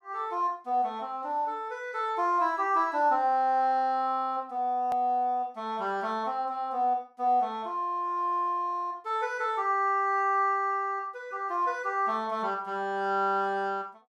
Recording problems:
edit click; at 5 s

